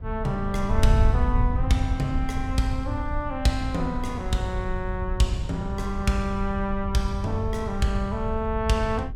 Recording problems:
wind on the microphone; below 88 Hz, SNR 3 dB

